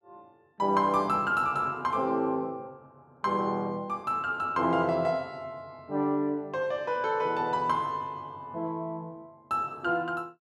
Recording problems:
none

